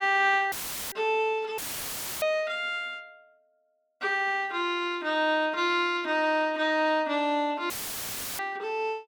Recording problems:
dropout; at 0.5 s, at 1.5 s for 0.5 s and at 7.5 s for 0.5 s; filled with static

